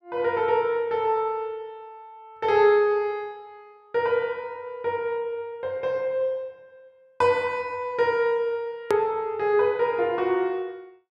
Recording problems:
click at an edit; at 9 s

